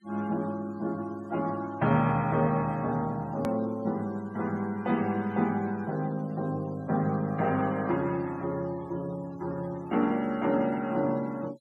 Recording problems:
denoising artefacts; signal-to-artefact ratio 24 dB
edit click; at 3.5 s

